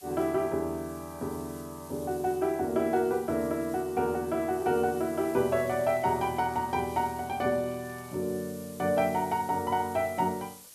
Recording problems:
background hiss; slope +1 dB per octave, SNR 19 dB
crackling; from 5.5 to 8 s; loose cable, SNR 29 dB

